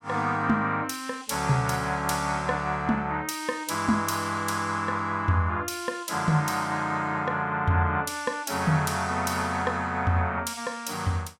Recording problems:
none

